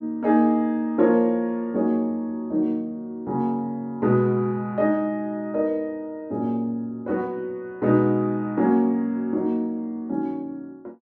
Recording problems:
none

